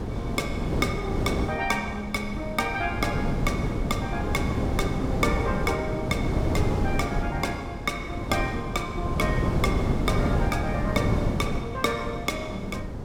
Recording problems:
wind noise; below 330 Hz, SNR -1 dB

